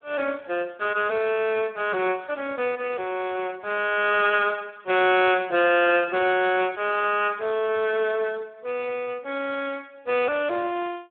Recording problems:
phone line; 300 Hz to 3.4 kHz, Speex

